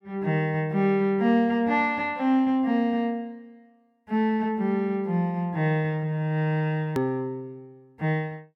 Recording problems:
click at an edit; at 7 s

